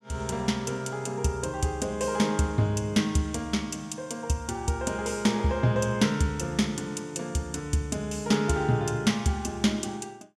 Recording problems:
none

